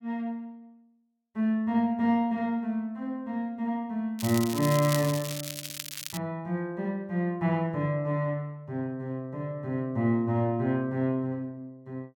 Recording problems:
crackle; from 4 to 6 s; loose cable, SNR 7 dB

